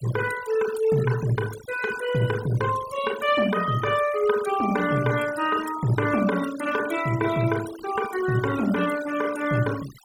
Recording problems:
noise reduction artefacts; signal-to-artefact ratio 14 dB

